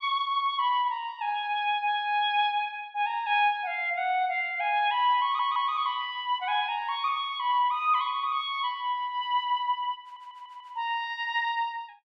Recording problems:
audio stuttering; at 5 s and at 10 s

